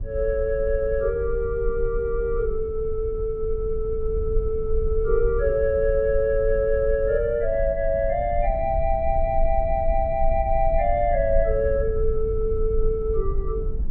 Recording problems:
low-frequency rumble; below 52 Hz, strongest tone 20 Hz, SNR 7 dB

